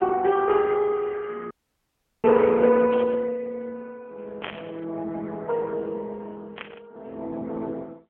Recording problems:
telephone audio; 240 Hz to 2.9 kHz, AMR-NB
audio cutting out; at 1.5 s for 0.5 s
burst of static; at 3 s, at 4.5 s and at 6.5 s; peak -5 dB vs average level

